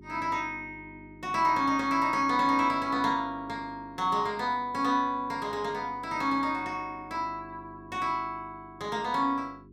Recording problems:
mains hum; 50 Hz, harmonics up to 400 Hz, SNR 22 dB

